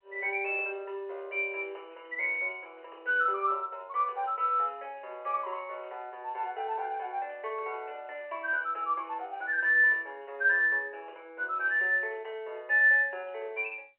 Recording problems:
telephone audio; 340 Hz to 3.1 kHz, G.711

